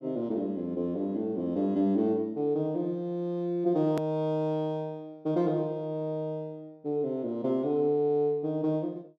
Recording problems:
hard cut with a click; at 4 s

